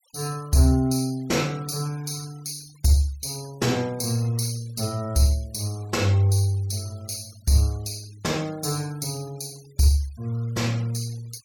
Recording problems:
denoising artefacts; signal-to-artefact ratio 24 dB

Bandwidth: 18 kHz